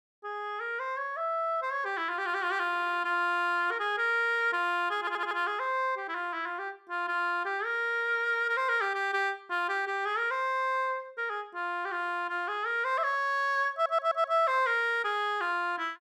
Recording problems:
audio stuttering; at 2.5 s, at 5 s and at 14 s

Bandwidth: 14.5 kHz